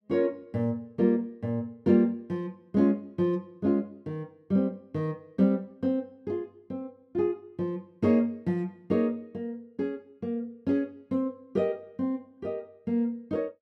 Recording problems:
none

